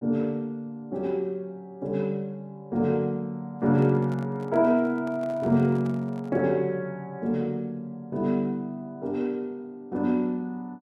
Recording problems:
microphone handling noise; from 3.5 to 6.5 s; peak -12 dB vs average level

